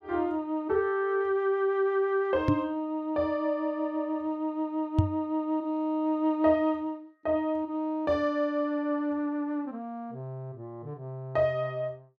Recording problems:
microphone bump; at 2.5 s and at 5 s; peak +9 dB vs average level

